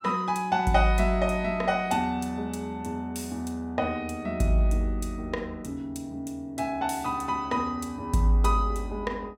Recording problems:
none

